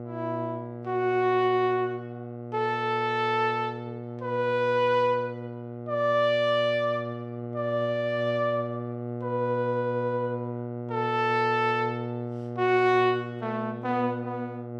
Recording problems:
hum; 60 Hz, harmonics up to 1.2 kHz, SNR 9 dB

